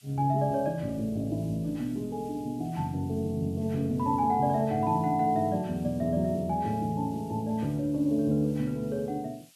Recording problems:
hiss; SNR 27 dB

